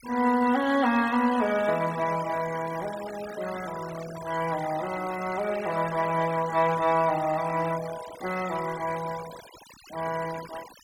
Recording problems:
noise reduction artefacts; signal-to-artefact ratio 15 dB

